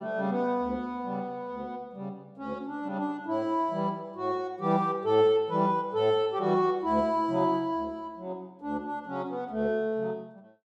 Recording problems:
none

